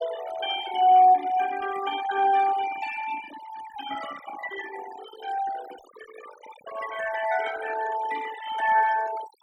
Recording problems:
noise reduction artefacts; signal-to-artefact ratio 14 dB

